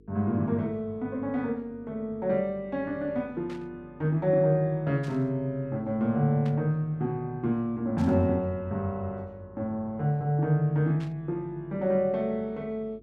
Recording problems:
electrical hum; 50 Hz, harmonics up to 450 Hz, SNR 26 dB
burst of static; 5 times, first at 3.5 s; peak -15 dB vs average level

